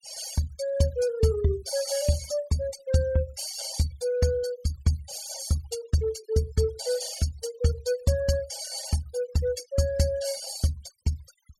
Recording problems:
noise reduction artefacts; signal-to-artefact ratio 13 dB

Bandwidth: 16 kHz